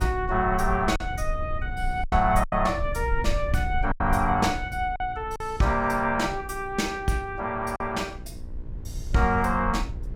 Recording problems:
hum; 60 Hz, harmonics up to 1.1 kHz, SNR 22 dB
rumble; below 68 Hz, SNR 8 dB
lost packets; 4% of the sound replaced, filled with silence

